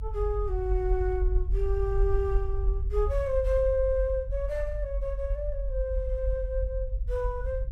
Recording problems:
rumble; below 50 Hz, strongest tone 46 Hz, SNR 1 dB

